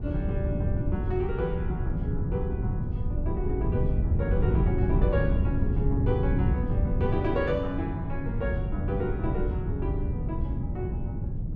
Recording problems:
wind noise; below 130 Hz, SNR -4 dB

